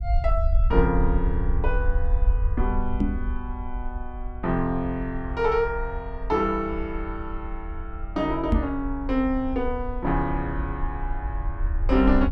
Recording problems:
rumble; below 62 Hz, SNR 3 dB
knock on the microphone; at 3 s and at 8.5 s; peak +9 dB vs average level

